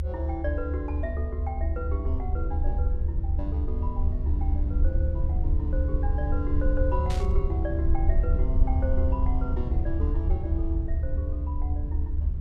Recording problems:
rumble; below 74 Hz, SNR -8 dB
burst of static; at 7 s; peak 0 dB vs average level

